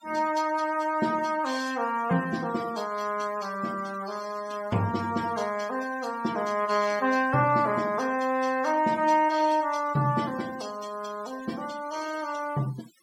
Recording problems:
denoising artefacts; signal-to-artefact ratio 19 dB

